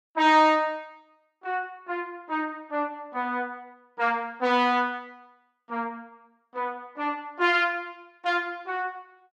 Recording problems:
none

